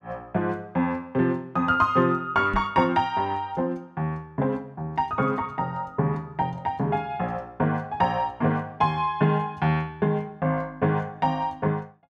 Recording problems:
knock on the microphone; at 2.5 s; peak 0 dB vs average level

